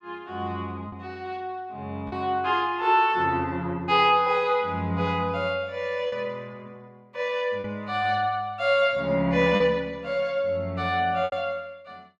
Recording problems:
lost packets; 2% of the sound replaced, filled with repeated pitch periods

